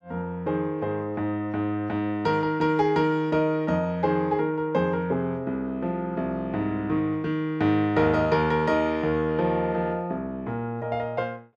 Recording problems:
none

